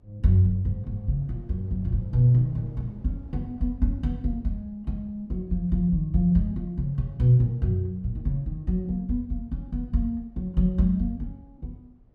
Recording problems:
rumble; below 180 Hz, SNR 26 dB

